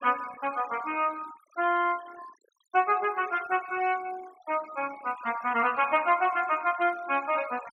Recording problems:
noise reduction artefacts; signal-to-artefact ratio 20 dB

